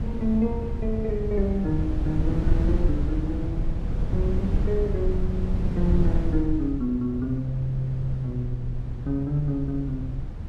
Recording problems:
wind noise; below 98 Hz, SNR 1 dB

